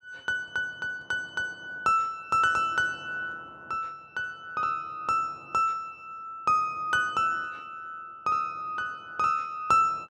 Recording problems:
none

